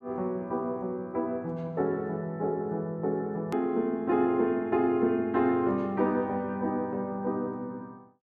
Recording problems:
click at an edit; at 3.5 s

